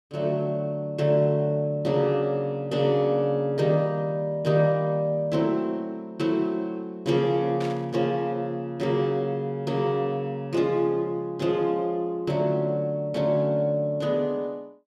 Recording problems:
static burst; at 7.5 s; peak -10 dB vs average level

